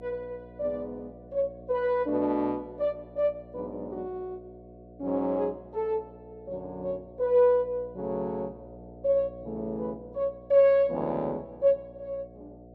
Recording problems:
mains hum; 60 Hz, harmonics up to 720 Hz, SNR 20 dB

